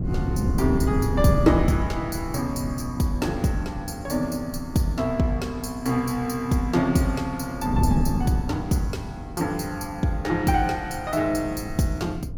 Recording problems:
wind on the microphone; below 190 Hz, SNR 5 dB

